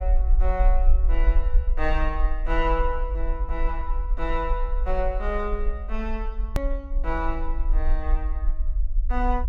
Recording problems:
low-frequency rumble; below 46 Hz, SNR -4 dB
hard cut with a click; at 6.5 s

